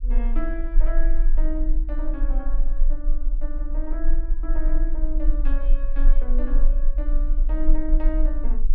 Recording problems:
rumble; below 32 Hz, strongest tone 20 Hz, SNR -10 dB

